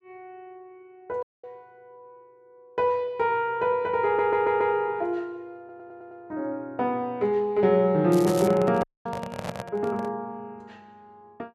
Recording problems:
audio cutting out; at 1 s and at 9 s
audio stuttering; at 4 s and at 5.5 s
crackle; at 8 s; loose cable, SNR 15 dB
handling noise; from 8 to 10 s; peak -3 dB vs average level

